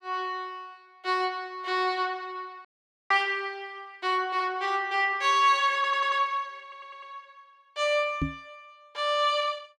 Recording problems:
audio cutting out; at 2.5 s
audio stuttering; at 6 s and at 6.5 s
microphone bump; at 8 s; peak +1 dB vs average level

